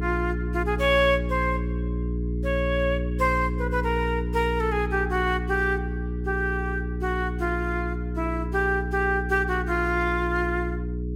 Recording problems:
electrical hum; 60 Hz, harmonics up to 420 Hz, SNR 3 dB

